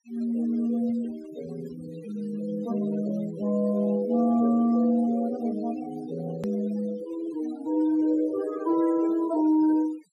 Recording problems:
noise reduction artefacts; signal-to-artefact ratio 18 dB
click at an edit; at 6.5 s

